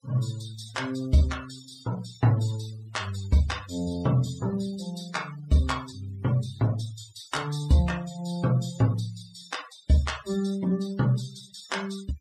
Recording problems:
denoising artefacts; signal-to-artefact ratio 17 dB

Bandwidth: 15 kHz